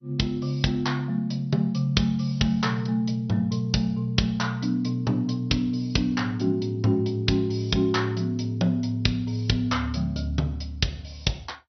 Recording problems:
codec artefacts; MP2, log-spectral distance 3 dB, nothing above 6 kHz

